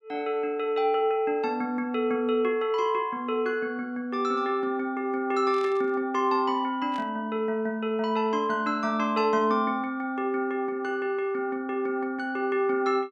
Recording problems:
static burst; at 5.5 s and at 7 s; peak -14 dB vs average level

